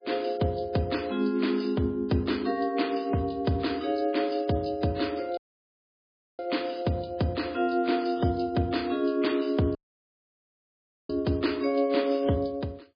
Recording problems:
codec artefacts; MP3, log-spectral distance 5 dB, nothing above 5 kHz
dropout; at 5.5 s for 1 s and at 10 s for 1.5 s

